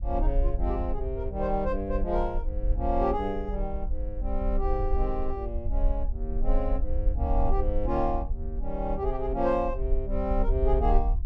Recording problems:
rumble; below 50 Hz, SNR 1 dB

